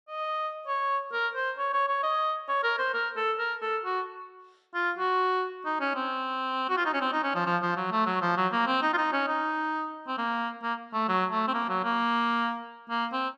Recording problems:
none

